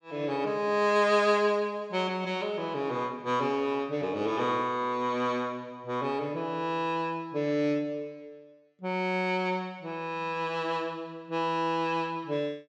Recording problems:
none

